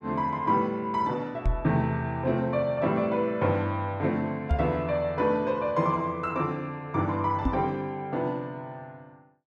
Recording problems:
knock on the microphone; at 1.5 s, at 4.5 s and at 7.5 s; peak +5 dB vs average level

